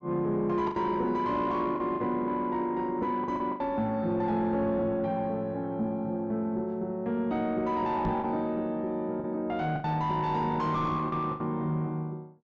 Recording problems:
low-pass filter; nothing above 8 kHz
distorted audio; soft clipping, signal-to-distortion ratio 11 dB
lost packets; 5% of the sound replaced, filled with the last packet
microphone bump; at 8 s; peak +3 dB vs average level

